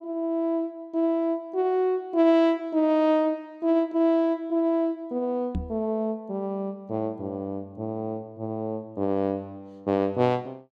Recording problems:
microphone thump; at 5.5 s; peak 0 dB vs average level

